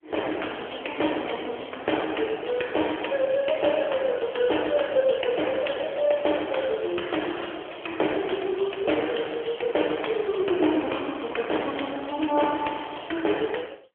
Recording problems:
telephone audio; 260 Hz to 3.3 kHz, AMR-NB

